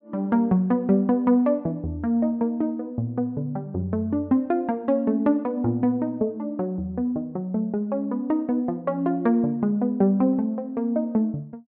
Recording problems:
none

